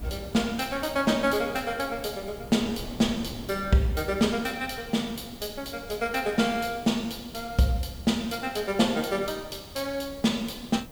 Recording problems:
hiss; slope +1 dB per octave, SNR 24 dB
wind noise; below 370 Hz, SNR 17 dB

